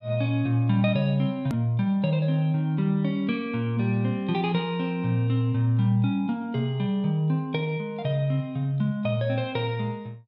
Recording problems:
click at an edit; at 1.5 s

